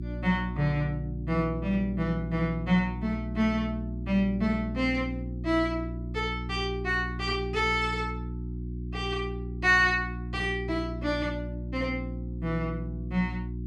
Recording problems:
mains hum; 60 Hz, harmonics up to 360 Hz, SNR 7 dB

